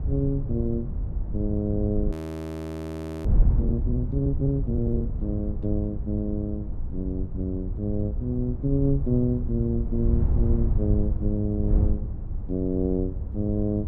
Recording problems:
wind on the microphone; below 88 Hz, SNR 1 dB
frozen audio; at 2 s for 1 s

